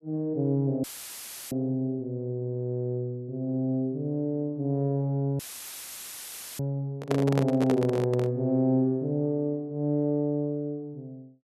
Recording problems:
audio cutting out; at 1 s for 0.5 s and at 5.5 s for 1 s; filled with static
microphone handling noise; from 7 to 8.5 s; peak +3 dB vs average level

